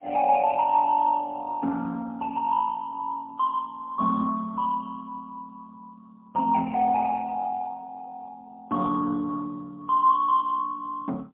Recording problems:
telephone audio; 220 Hz to 2.8 kHz, AMR-NB, then MP3

